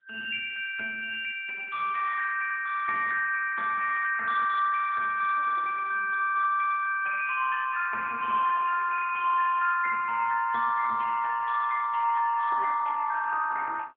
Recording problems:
phone line; 450 Hz to 3.4 kHz, AMR-NB

